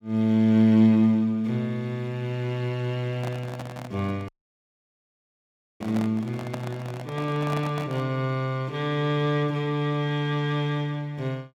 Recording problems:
handling noise; from 3 to 8 s; peak -5 dB vs average level
audio cutting out; at 4.5 s for 1.5 s

